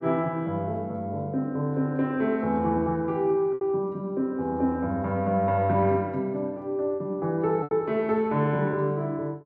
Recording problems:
lost packets; 2% of the sound replaced, filled with repeated pitch periods

